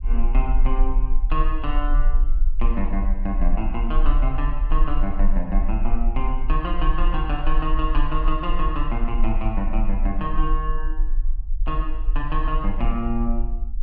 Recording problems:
rumble; below 38 Hz, strongest tone 22 Hz, SNR -3 dB

